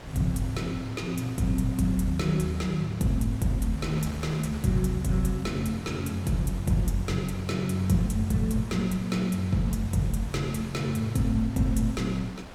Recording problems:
wind on the microphone; below 1.7 kHz, SNR 16 dB

